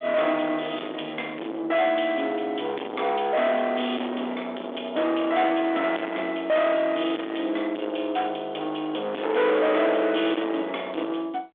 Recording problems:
phone line; 260 Hz to 3.6 kHz, G.726
distorted audio; soft clipping, signal-to-distortion ratio 7 dB

